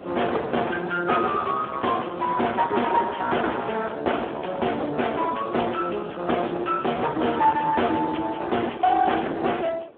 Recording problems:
telephone audio; 260 Hz to 3.5 kHz, Speex
distorted audio; soft clipping, signal-to-distortion ratio 8 dB
wind on the microphone; below 860 Hz, SNR 19 dB

